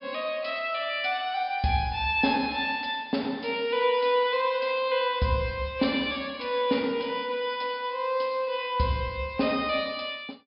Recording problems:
low-pass filter; nothing above 5.5 kHz

